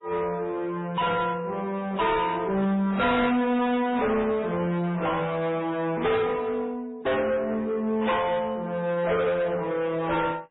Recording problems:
lossy codec; AAC, then MP3, log-spectral distance 3 dB, nothing above 3.8 kHz
distortion; soft clipping, signal-to-distortion ratio 7 dB

